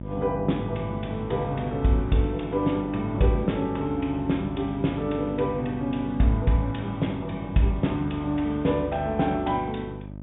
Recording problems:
treble missing; nothing above 3.6 kHz
hum; 50 Hz, harmonics up to 950 Hz, SNR 11 dB

